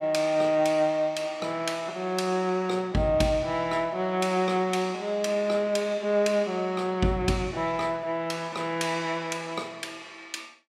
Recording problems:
none

